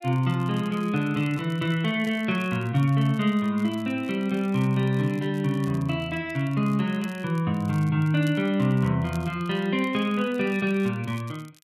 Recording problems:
crackle; vinyl, SNR 27 dB

